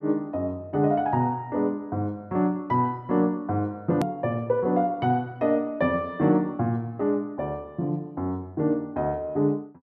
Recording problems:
hard cut with a click; at 4 s

